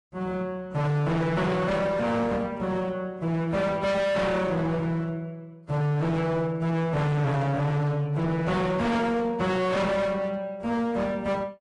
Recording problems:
lossy compression; AAC, log-spectral distance 2 dB, nothing above 10.7 kHz
distorted audio; hard clipping, signal-to-distortion ratio 6 dB

